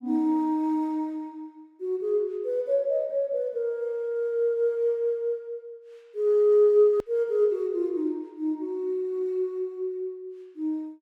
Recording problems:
edit click; at 7 s

